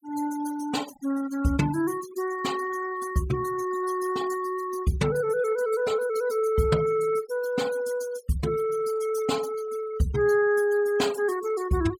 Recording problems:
denoising artefacts; signal-to-artefact ratio 17 dB

